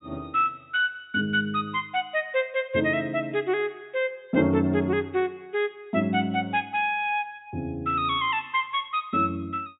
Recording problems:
treble missing; nothing above 4 kHz

